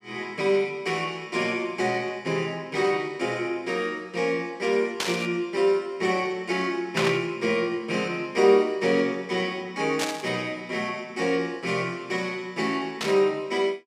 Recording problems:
burst of static; 4 times, first at 5 s; peak +3 dB vs average level

